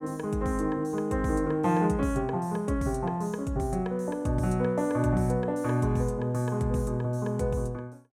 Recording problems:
none

